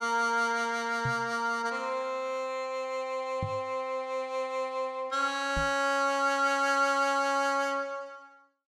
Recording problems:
microphone bump; at 1 s, at 3.5 s and at 5.5 s; peak -2 dB vs average level

